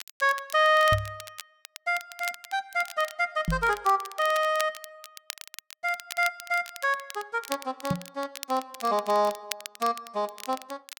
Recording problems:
crackling; vinyl, SNR 14 dB
knock on the microphone; at 1 s, at 3.5 s and at 8 s; peak +3 dB vs average level

